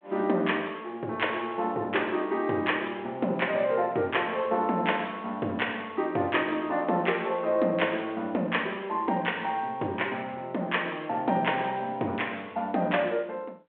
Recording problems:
phone line; 260 Hz to 3.4 kHz, G.726

